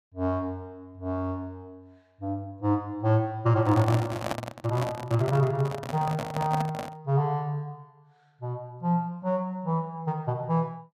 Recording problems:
microphone handling noise; from 3.5 to 7 s; peak +2 dB vs average level

